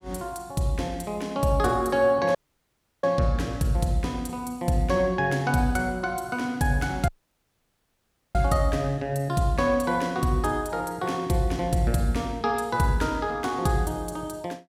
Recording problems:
dropout; at 2.5 s for 0.5 s and at 7 s for 1.5 s

